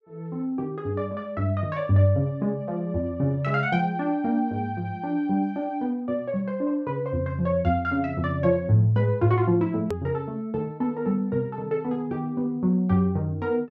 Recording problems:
edit click; at 10 s

